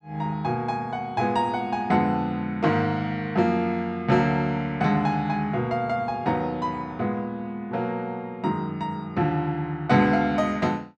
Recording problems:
none

